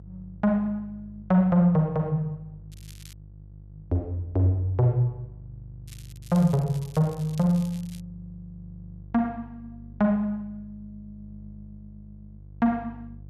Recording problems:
hum; 50 Hz, harmonics up to 350 Hz, SNR 21 dB
crackle; at 2.5 s and from 6 to 8 s; loose cable, SNR 24 dB

